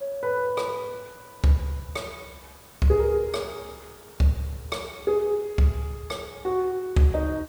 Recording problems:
background hiss; SNR 23 dB

